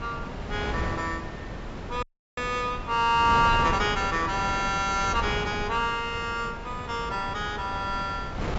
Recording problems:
low-pass filter; nothing above 8 kHz
wind on the microphone; below 690 Hz, SNR 8 dB
audio cutting out; at 2 s

